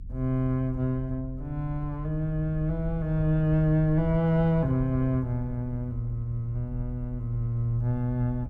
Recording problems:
rumble; below 78 Hz, SNR 11 dB

